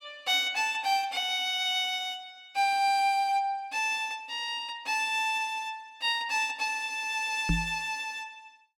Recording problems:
knock on the microphone; at 7.5 s; peak +4 dB vs average level

